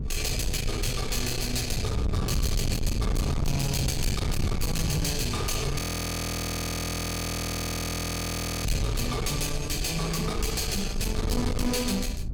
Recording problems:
distorted audio; soft clipping, signal-to-distortion ratio 8 dB
rumble; below 140 Hz, SNR 3 dB
audio freezing; at 6 s for 3 s

